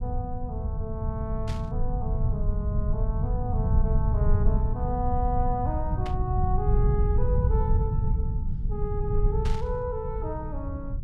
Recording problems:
rumble; below 100 Hz, SNR -6 dB
burst of static; at 1.5 s, at 6 s and at 9.5 s; peak -3 dB vs average level

